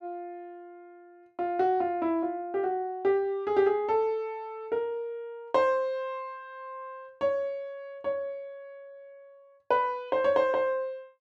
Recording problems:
none

